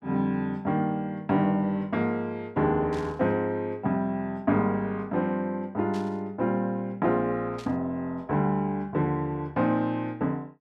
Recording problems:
burst of static; at 3 s, at 6 s and at 7.5 s; peak -13 dB vs average level

